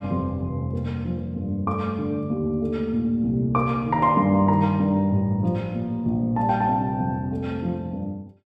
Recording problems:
none

